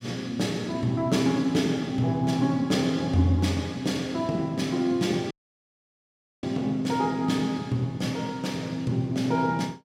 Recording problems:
dropout; at 5.5 s for 1 s

